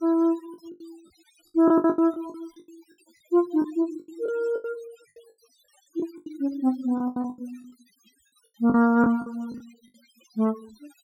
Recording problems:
denoising artefacts; signal-to-artefact ratio 26 dB
lost packets; 15% of the sound replaced, filled with the last packet

